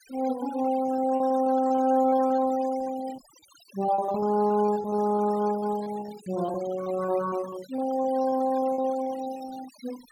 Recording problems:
denoising artefacts; signal-to-artefact ratio 19 dB
lost packets; 13% of the sound replaced, filled with repeated pitch periods

